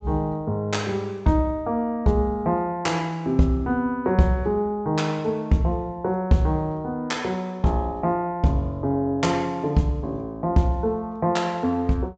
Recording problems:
treble missing; nothing above 8 kHz

